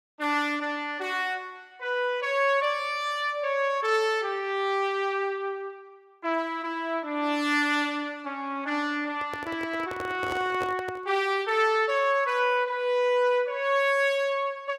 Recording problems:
microphone handling noise; from 9 to 11 s; peak -4 dB vs average level

